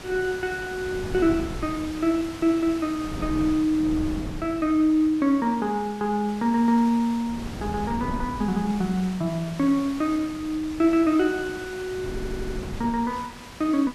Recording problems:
background hiss; slope -3 dB per octave, SNR 17 dB
wind noise; below 250 Hz, SNR 13 dB
stutter; at 12 s

